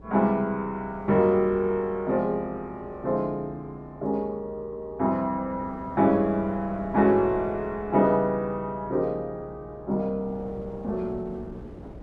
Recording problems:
electrical hum; 60 Hz, harmonics up to 540 Hz, SNR 23 dB
wind on the microphone; below 440 Hz, SNR 20 dB

